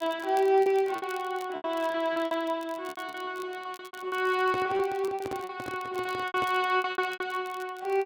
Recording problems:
crackle; vinyl, SNR 23 dB
lost packets; 16% of the sound replaced, filled with repeated pitch periods
microphone handling noise; from 4.5 to 6.5 s; peak -3 dB vs average level

